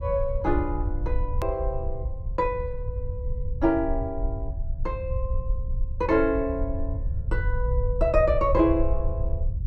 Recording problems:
rumble; below 72 Hz, SNR 4 dB
hard cut with a click; at 1.5 s

